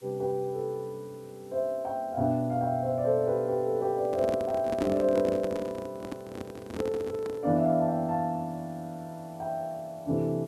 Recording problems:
background hiss; SNR 30 dB
handling noise; from 4 to 7.5 s; peak +1 dB vs average level

